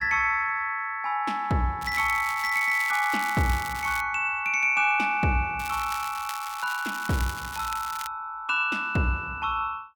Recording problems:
crackling; from 2 to 4 s and from 5.5 to 8 s; loose cable, SNR 13 dB

